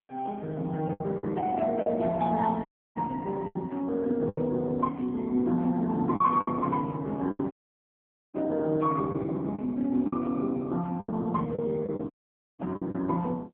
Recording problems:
phone line; 150 Hz to 2.2 kHz, AMR-NB
lost packets; 7% of the sound replaced, filled with the last packet
dropout; at 2.5 s, at 7.5 s for 1 s and at 12 s

